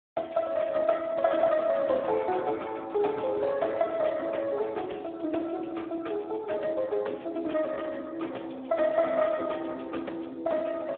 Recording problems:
phone line; 280 Hz to 3.7 kHz, Speex

